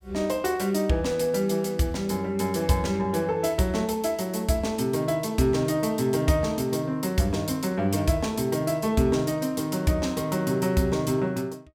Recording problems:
none

